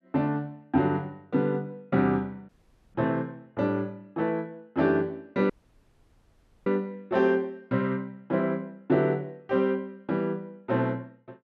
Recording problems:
dropout; at 2.5 s and at 5.5 s for 1 s

